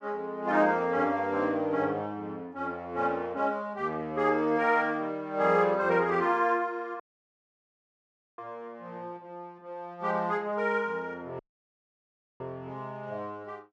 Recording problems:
audio cutting out; at 7 s for 1.5 s and at 11 s for 1 s

